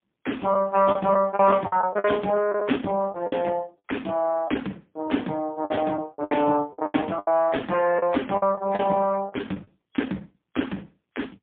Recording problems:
phone line; 190 Hz to 3.4 kHz, AMR-NB, then MP3
lost packets; 9% of the sound replaced, filled with the last packet

